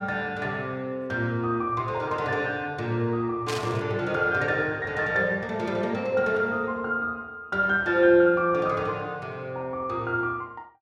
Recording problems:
burst of static; at 3.5 s; peak -3 dB vs average level

